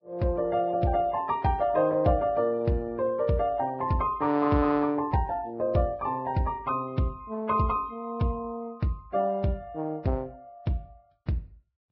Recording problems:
lossy codec; Vorbis, log-spectral distance 2 dB

